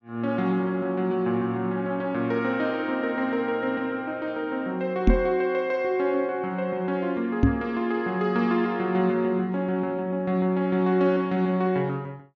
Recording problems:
treble cut off; nothing above 7.4 kHz
microphone bump; at 5 s and at 7.5 s; peak +9 dB vs average level

